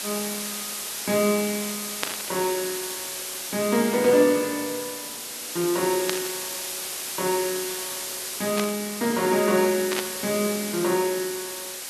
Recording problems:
hiss; slope +1 dB per octave, SNR 5 dB
static burst; 4 times, first at 2 s; peak +2 dB vs average level

